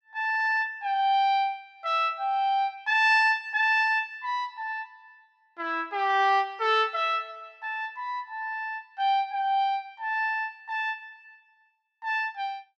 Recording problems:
none

